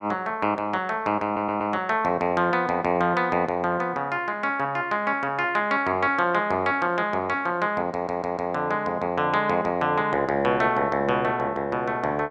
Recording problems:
audio stuttering; at 1.5 s and at 8 s

